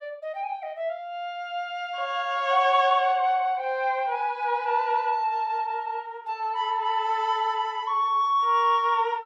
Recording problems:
none

